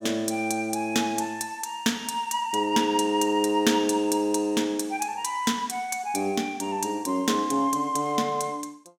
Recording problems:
none

